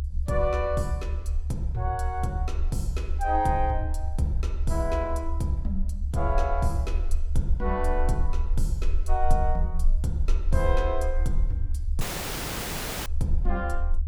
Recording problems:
rumble; below 70 Hz, SNR 1 dB
dropout; at 12 s for 1 s

